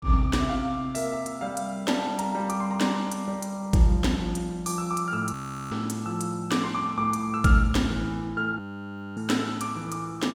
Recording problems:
audio freezing; at 5.5 s and at 8.5 s for 0.5 s

